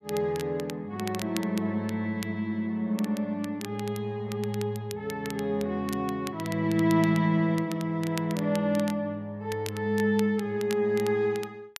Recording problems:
crackle; vinyl, SNR 16 dB

